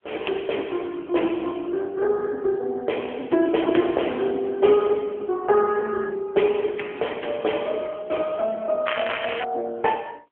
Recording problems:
phone line; 260 Hz to 3.2 kHz, AMR-NB
crackling; at 9 s; loose cable, SNR 6 dB

